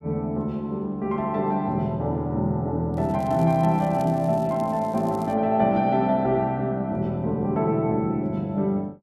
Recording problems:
crackle; from 3 to 5.5 s; loose cable, SNR 27 dB

